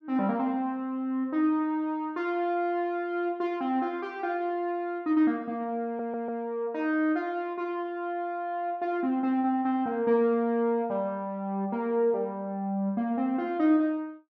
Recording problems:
audio stuttering; at 6 s

